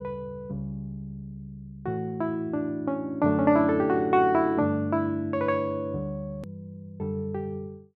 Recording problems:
hard cut with a click; at 6.5 s

